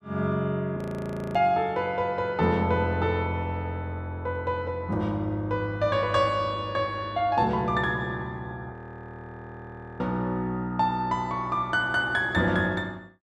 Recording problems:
audio freezing; at 1 s for 0.5 s and at 8.5 s for 1.5 s

